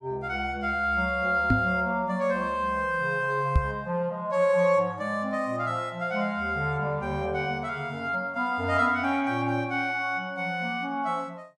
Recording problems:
microphone thump; at 1.5 s and at 3.5 s; peak +7 dB vs average level

